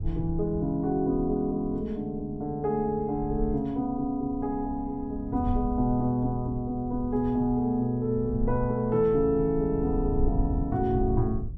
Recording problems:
rumble; below 80 Hz, SNR 10 dB

